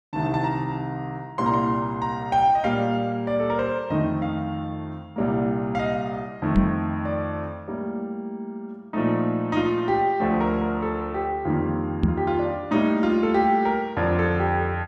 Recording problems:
knock on the microphone; at 6.5 s and at 12 s; peak +8 dB vs average level

